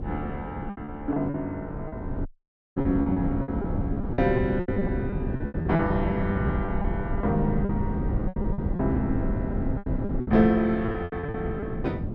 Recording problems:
rumble; below 76 Hz, SNR 10 dB
wind noise; below 280 Hz, SNR 3 dB
packet loss; 14% of the sound replaced, filled with repeated pitch periods
dropout; at 2.5 s for 0.5 s

